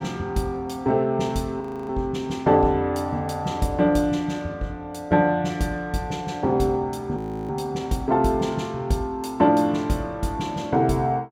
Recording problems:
audio freezing; at 1.5 s and at 7 s

